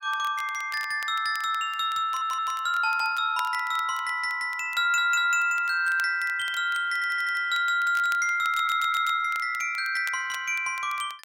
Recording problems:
crackling; vinyl, SNR 21 dB
stutter; 4 times, first at 2 s

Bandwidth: 16.5 kHz